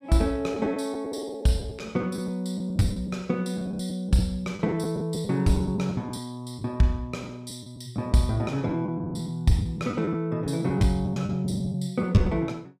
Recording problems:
packet loss; 10% of the sound replaced, filled with the last packet

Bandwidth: 15 kHz